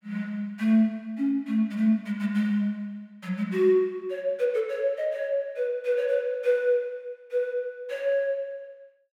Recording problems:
none

